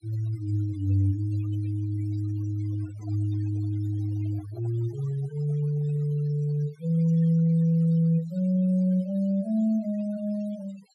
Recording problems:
noise reduction artefacts; signal-to-artefact ratio 23 dB
microphone handling noise; from 2.5 to 6 s; peak -17 dB vs average level

